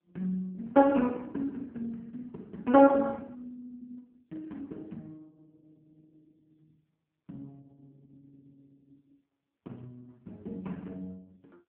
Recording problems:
telephone audio; 240 Hz to 3.3 kHz, AMR-NB

